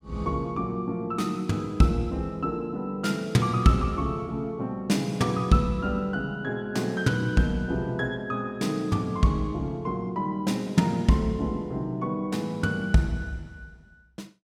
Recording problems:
none

